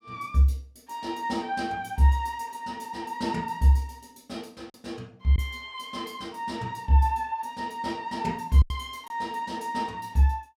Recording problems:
packet loss; 1.6% of the sound replaced, filled with silence

